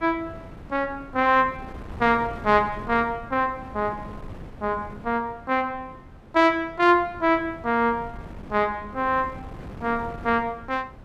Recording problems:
wind noise; below 410 Hz, SNR 17 dB

